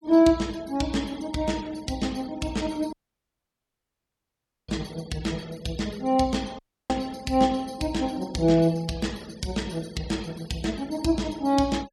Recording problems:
noise reduction artefacts; signal-to-artefact ratio 21 dB
dropout; at 3 s for 1.5 s and at 6.5 s

